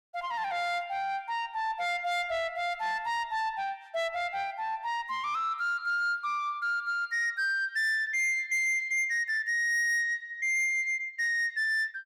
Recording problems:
distortion; soft clipping, signal-to-distortion ratio 11 dB

